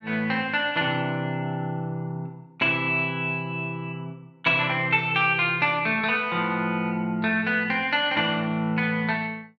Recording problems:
none

